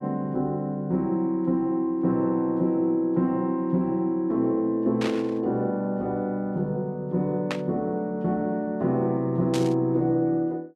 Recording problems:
static burst; at 5 s, at 7.5 s and at 9.5 s; peak -1 dB vs average level

